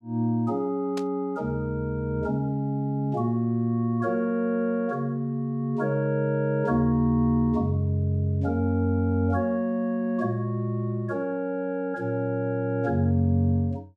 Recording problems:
burst of static; at 1 s; peak -9 dB vs average level

